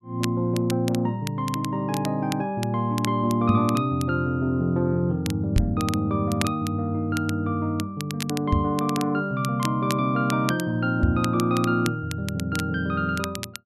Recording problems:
crackle; vinyl, SNR 13 dB
microphone bump; 4 times, first at 3.5 s; peak +7 dB vs average level

